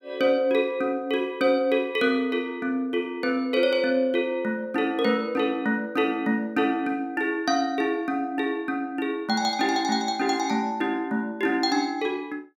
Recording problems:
none

